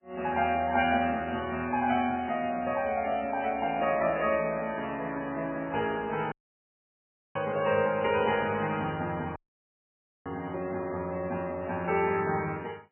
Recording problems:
lossy compression; MP3, then MP3, log-spectral distance 3 dB, nothing above 2.5 kHz
audio cutting out; at 6.5 s for 1 s and at 9.5 s for 1 s

